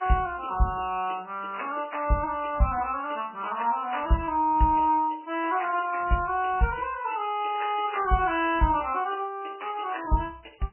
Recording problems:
lossy codec; MP3, log-spectral distance 6 dB, nothing above 2.7 kHz

